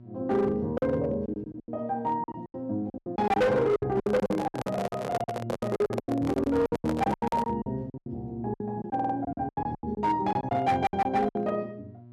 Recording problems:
distorted audio; hard clipping, signal-to-distortion ratio 12 dB
hum; 60 Hz, harmonics up to 720 Hz, SNR 21 dB
packet loss; 19% of the sound replaced, filled with silence
handling noise; from 4 to 7.5 s; peak +2 dB vs average level
stutter; at 9 s

